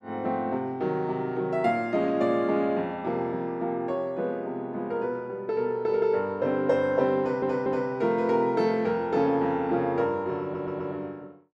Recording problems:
stutter; at 7 s and at 10 s

